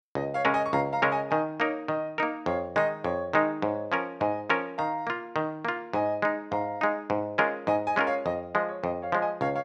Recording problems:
none

